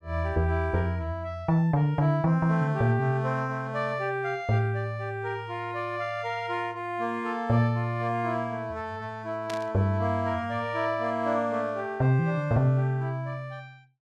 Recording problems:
static burst; at 9.5 s; peak -7 dB vs average level

